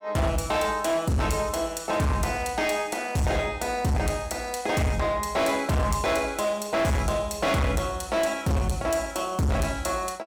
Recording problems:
distortion; hard clipping, signal-to-distortion ratio 7 dB

